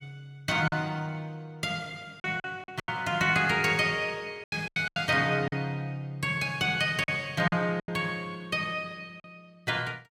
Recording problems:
packet loss; 7% of the sound replaced, filled with silence

